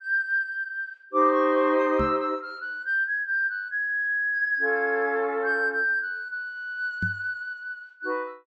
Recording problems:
microphone thump; at 2 s and at 7 s; peak -2 dB vs average level

